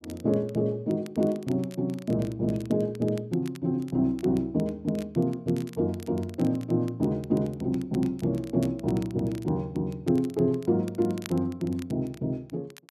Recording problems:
crackling; vinyl, SNR 23 dB

